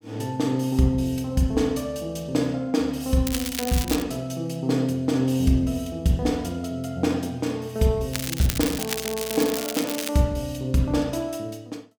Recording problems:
crackling; at 3.5 s and from 8 to 10 s; loose cable, SNR 6 dB

